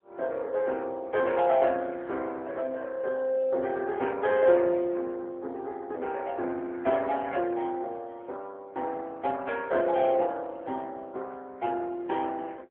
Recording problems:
telephone audio; 280 Hz to 3.4 kHz, AMR-NB

